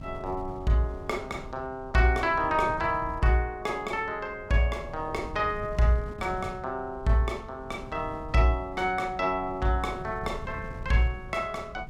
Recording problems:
wind noise; below 160 Hz, SNR 15 dB

